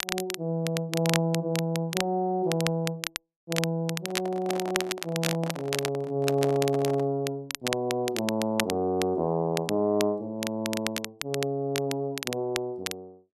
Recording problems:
crackle; vinyl, SNR 6 dB
microphone handling noise; from 4 to 7 s; peak -3 dB vs average level

